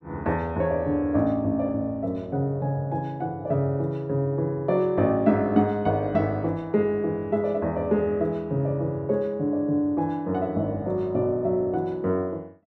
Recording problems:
none

